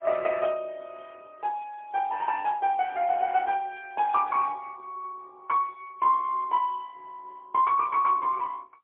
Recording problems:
telephone audio; 170 Hz to 3.4 kHz, AMR-NB, then MP3

